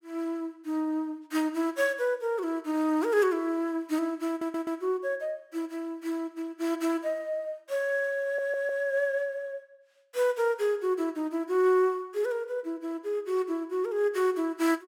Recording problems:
audio stuttering; at 4.5 s and at 8 s

